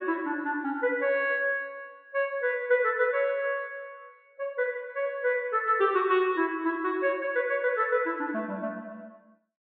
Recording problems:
low-pass filter; nothing above 4 kHz

